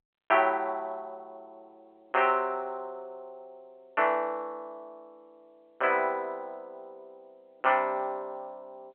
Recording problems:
telephone audio; 320 Hz to 3.2 kHz, G.711

